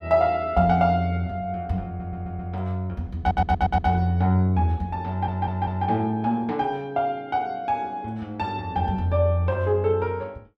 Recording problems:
audio stuttering; at 2 s, at 3 s and at 5 s

